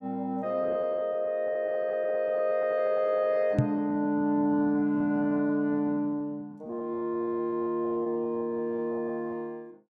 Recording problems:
lost packets; 13% of the sound replaced, filled with repeated pitch periods
microphone bump; at 3.5 s; peak +7 dB vs average level

